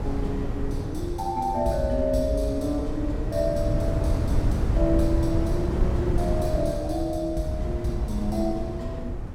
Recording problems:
wind noise; below 150 Hz, SNR 1 dB

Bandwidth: 16.5 kHz